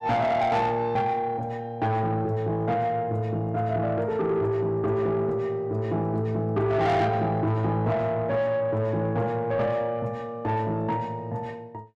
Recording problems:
distorted audio; soft clipping, signal-to-distortion ratio 11 dB

